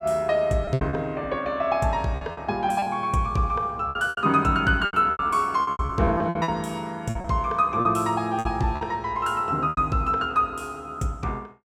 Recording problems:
packet loss; 11% of the sound replaced, filled with repeated pitch periods

